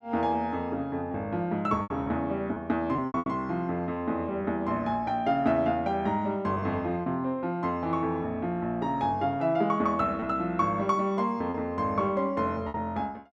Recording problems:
packet loss; 4% of the sound replaced, filled with repeated pitch periods

